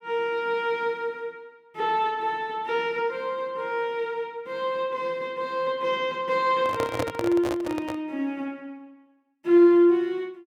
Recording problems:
microphone handling noise; from 6.5 to 8 s; peak +2 dB vs average level

